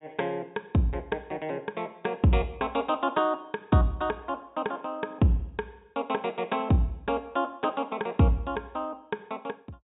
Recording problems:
treble cut off; nothing above 4 kHz

